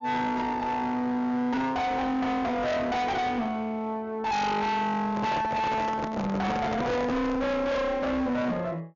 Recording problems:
treble missing; nothing above 7.1 kHz
distorted audio; hard clipping, uneven, signal-to-distortion ratio 5 dB
handling noise; from 5 to 7.5 s; peak 0 dB vs average level

